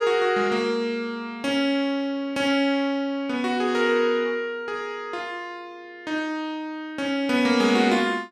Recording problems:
none

